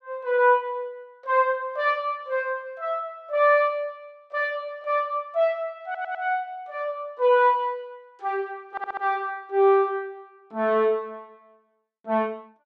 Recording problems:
stutter; at 6 s and at 8.5 s

